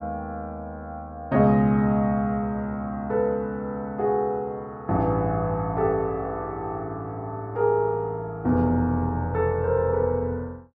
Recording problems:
none

